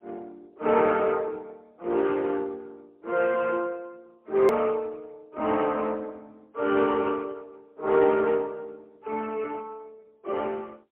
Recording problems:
phone line; 260 Hz to 3.2 kHz, AMR-NB, then MP3
edit click; at 4.5 s

